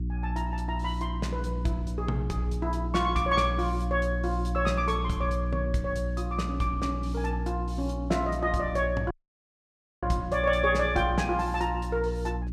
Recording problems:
hum; 60 Hz, harmonics up to 360 Hz, SNR 3 dB
dropout; at 9 s for 1 s

